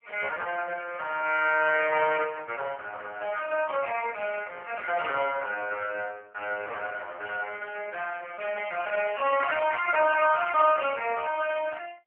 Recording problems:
telephone audio; 370 Hz to 2.8 kHz, AMR-NB

